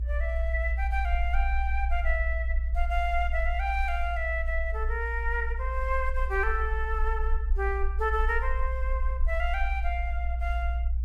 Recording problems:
low-frequency rumble; below 60 Hz, SNR -1 dB

